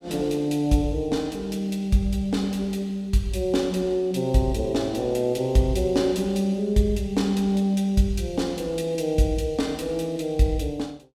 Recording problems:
none

